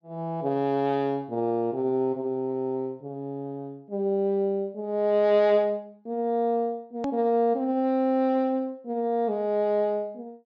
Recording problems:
low-pass filter; nothing above 8 kHz
hard cut with a click; at 7 s

